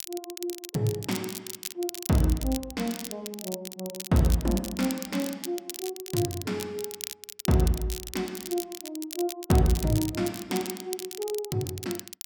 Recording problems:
crackling; vinyl, SNR 8 dB

